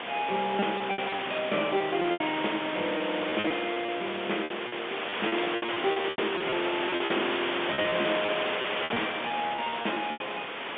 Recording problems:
telephone audio; 280 Hz to 3.5 kHz, G.711
background hiss; SNR 1 dB
packet loss; 13% of the sound replaced, filled with repeated pitch periods

